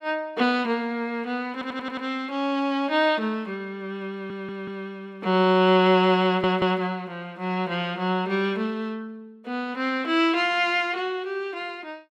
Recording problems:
stutter; at 1.5 s, at 4 s and at 6.5 s

